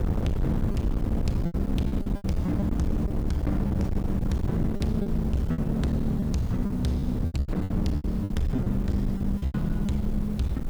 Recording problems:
distorted audio; hard clipping, signal-to-distortion ratio 8 dB
background hiss; slope -2 dB per octave, SNR 26 dB
low-frequency rumble; below 94 Hz, SNR 6 dB
wind on the microphone; below 200 Hz, SNR 3 dB
lost packets; 11% of the sound replaced, filled with repeated pitch periods

